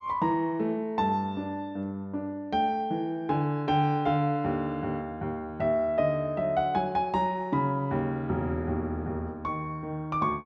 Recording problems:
none

